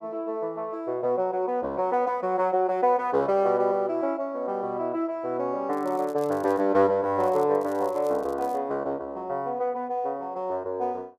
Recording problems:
crackling; at 5.5 s, at 7 s and from 7.5 to 8.5 s; loose cable, SNR 27 dB

